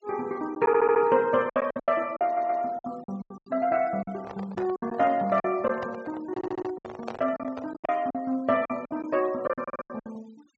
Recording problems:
treble missing; nothing above 8 kHz
noise reduction artefacts; signal-to-artefact ratio 26 dB
packet loss; 13% of the sound replaced, filled with silence
stutter; 4 times, first at 0.5 s
handling noise; from 4 to 8 s; peak -4 dB vs average level

